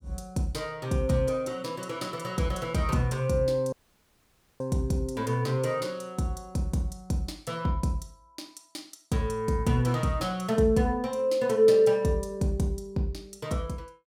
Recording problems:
dropout; at 3.5 s for 1 s

